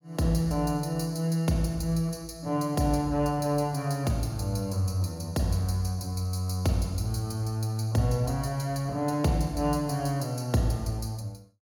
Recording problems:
none

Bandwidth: 18 kHz